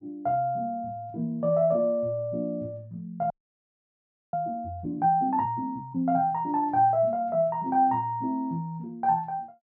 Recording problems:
frozen audio; at 3.5 s for 1 s

